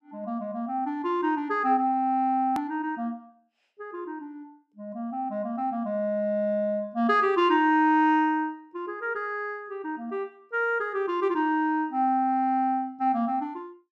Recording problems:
hard cut with a click; at 2.5 s

